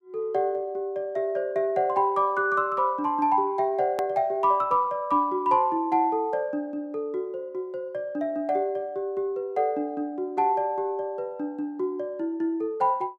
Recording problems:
edit click; at 4 s

